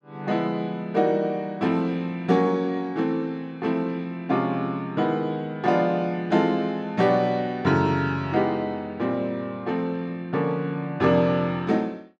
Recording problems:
none

